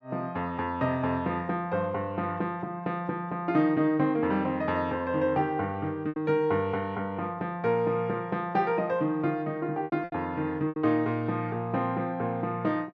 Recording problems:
lost packets; 2% of the sound replaced, filled with repeated pitch periods

